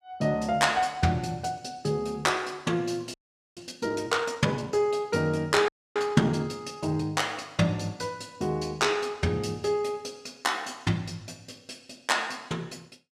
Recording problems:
audio freezing; at 3 s and at 5.5 s

